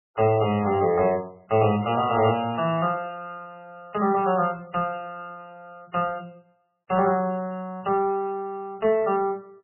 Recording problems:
codec artefacts; MP3, log-spectral distance 5 dB, nothing above 2.7 kHz

